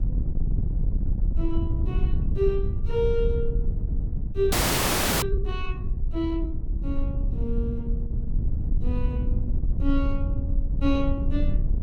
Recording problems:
wind noise; below 72 Hz, SNR -3 dB
audio freezing; at 4.5 s for 0.5 s

